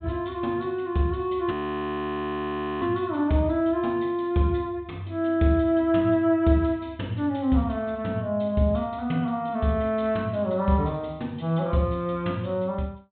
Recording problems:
low-pass filter; nothing above 4 kHz
frozen audio; at 1.5 s for 1.5 s

